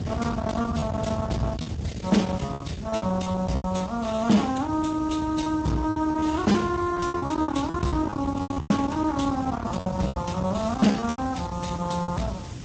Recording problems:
lossy codec; Speex, then Vorbis, log-spectral distance 3 dB, nothing above 7.8 kHz
distorted audio; soft clipping, signal-to-distortion ratio 10 dB
background hiss; slope +1 dB per octave, SNR 23 dB
rumble; below 380 Hz, SNR 8 dB
packet loss; 12% of the sound replaced, filled with repeated pitch periods

